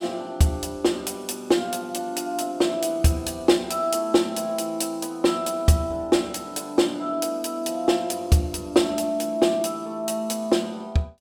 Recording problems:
none

